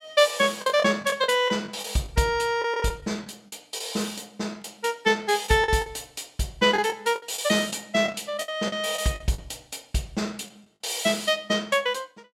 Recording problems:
packet loss; 8% of the sound replaced, filled with the last packet

